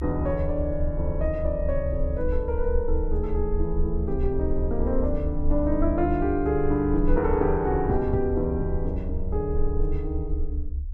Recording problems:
rumble; below 68 Hz, SNR 4 dB

